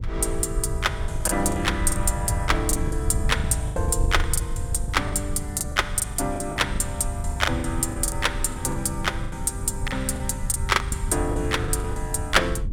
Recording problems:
rumble; below 84 Hz, SNR 6 dB
wind noise; below 180 Hz, SNR 13 dB
lost packets; 14% of the sound replaced, filled with the last packet

